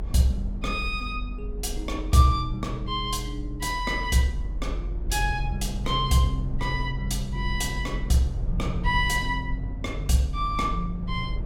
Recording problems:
rumble; below 60 Hz, strongest tone 44 Hz, SNR 6 dB

